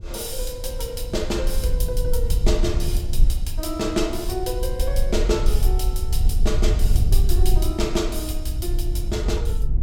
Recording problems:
rumble; below 56 Hz, SNR -3 dB

